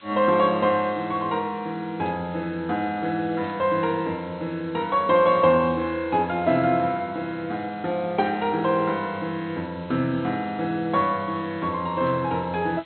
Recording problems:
low-pass filter; nothing above 4.1 kHz
hiss; SNR 25 dB
burst of static; at 2 s, at 3.5 s and at 12 s; peak -16 dB vs average level

